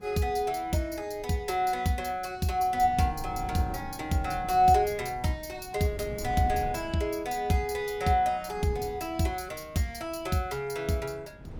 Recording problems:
wind noise; below 210 Hz, SNR 15 dB

